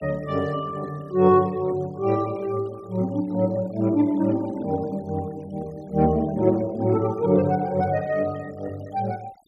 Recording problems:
denoising artefacts; signal-to-artefact ratio 27 dB

